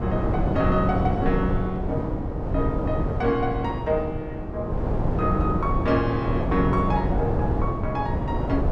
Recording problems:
wind noise; below 370 Hz, SNR 0 dB

